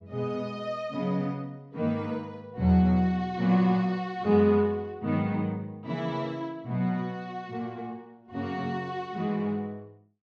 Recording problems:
none

